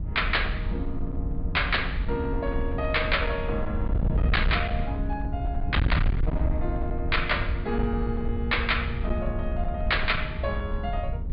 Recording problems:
low-pass filter; nothing above 4.6 kHz
distorted audio; hard clipping, signal-to-distortion ratio 8 dB
wind on the microphone; below 90 Hz, SNR 1 dB

